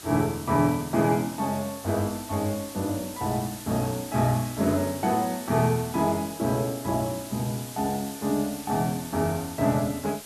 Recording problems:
background hiss; slope -1 dB per octave, SNR 13 dB

